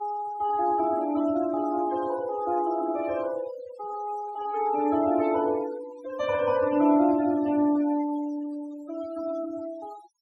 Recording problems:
denoising artefacts; signal-to-artefact ratio 17 dB

